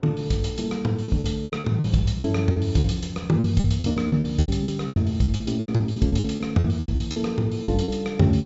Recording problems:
low-pass filter; nothing above 8 kHz
wind noise; below 410 Hz, SNR 24 dB
lost packets; 17% of the sound replaced, filled with repeated pitch periods

